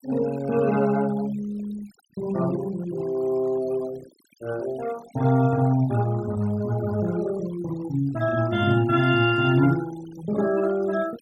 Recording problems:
noise reduction artefacts; signal-to-artefact ratio 19 dB

